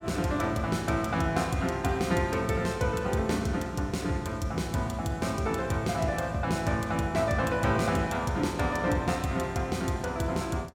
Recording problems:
none

